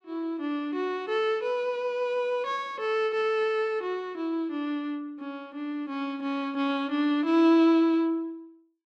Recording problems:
none

